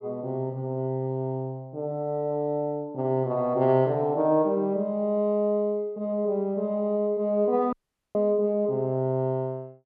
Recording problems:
audio cutting out; at 7.5 s

